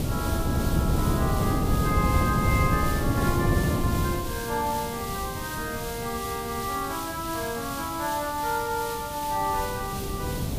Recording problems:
background hiss; SNR 7 dB
wind on the microphone; below 270 Hz, SNR -2 dB

